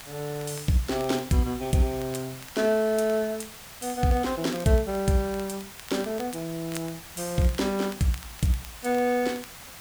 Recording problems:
background hiss; slope 0 dB per octave, SNR 15 dB
crackling; vinyl, SNR 22 dB

